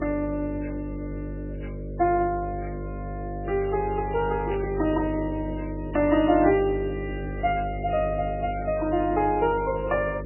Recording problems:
lossy codec; MP3, log-spectral distance 2 dB, nothing above 2.4 kHz
hum; 50 Hz, harmonics up to 600 Hz, SNR 8 dB
burst of static; at 4.5 s; peak -11 dB vs average level

